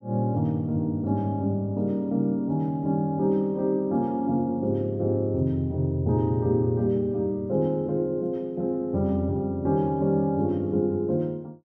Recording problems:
none

